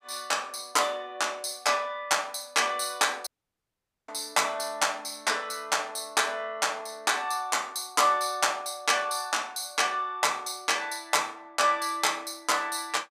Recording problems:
dropout; at 3.5 s for 1 s

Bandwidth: 15.5 kHz